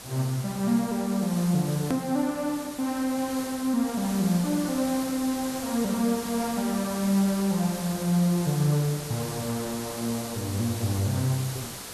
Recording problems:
hiss; slope -2 dB per octave, SNR 10 dB
hard cut with a click; at 2 s

